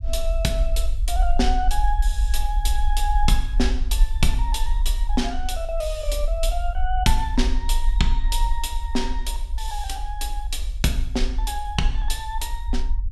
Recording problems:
rumble; below 46 Hz, SNR -1 dB

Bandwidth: 14.5 kHz